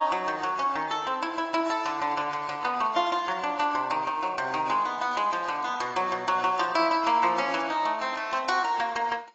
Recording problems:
codec artefacts; AAC, log-spectral distance 3 dB, nothing above 7.3 kHz

